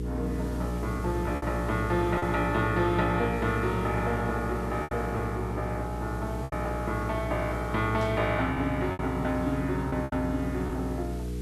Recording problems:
hum; 60 Hz, harmonics up to 480 Hz, SNR 5 dB
hiss; slope -2 dB per octave, SNR 21 dB
lost packets; 5% of the sound replaced, filled with repeated pitch periods
static burst; at 8 s; peak -11 dB vs average level

